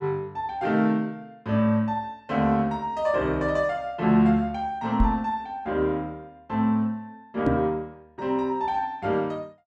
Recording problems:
microphone bump; at 5 s and at 7.5 s; peak +5 dB vs average level

